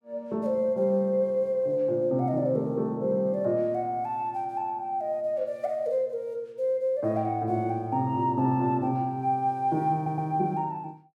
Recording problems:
audio stuttering; at 10 s

